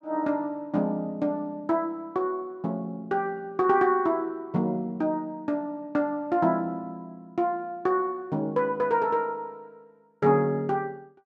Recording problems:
none

